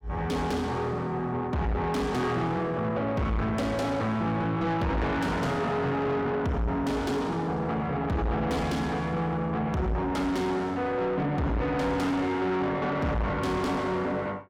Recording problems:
distorted audio; soft clipping, signal-to-distortion ratio 8 dB

